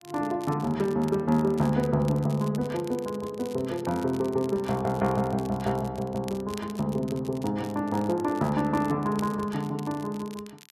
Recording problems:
crackle; vinyl, SNR 21 dB

